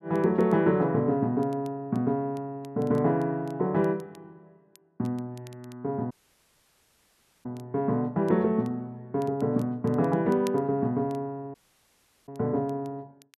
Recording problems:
crackling; vinyl, SNR 30 dB
dropout; at 6 s for 1.5 s and at 12 s for 0.5 s

